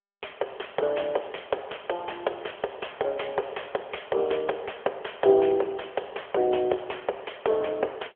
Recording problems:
telephone audio; 340 Hz to 3.3 kHz, AMR-NB

